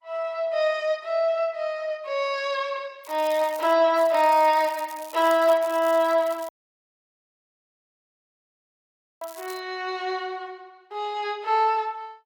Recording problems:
lossy codec; Opus, log-spectral distance 3 dB
crackling; at 3 s and from 4 to 9.5 s; loose cable, SNR 21 dB
dropout; at 6.5 s for 2.5 s

